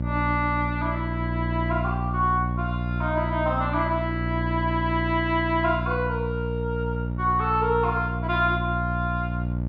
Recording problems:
hum; 60 Hz, harmonics up to 600 Hz, SNR 3 dB

